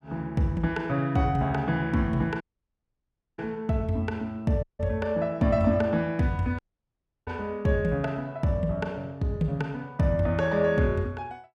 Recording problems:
audio cutting out; at 2.5 s for 1 s, at 4.5 s and at 6.5 s for 0.5 s

